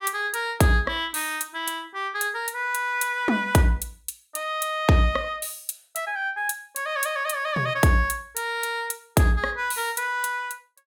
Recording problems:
none

